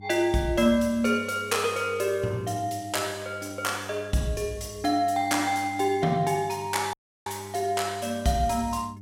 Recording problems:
hum; 50 Hz, harmonics up to 400 Hz, SNR 19 dB
audio cutting out; at 7 s

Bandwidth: 16 kHz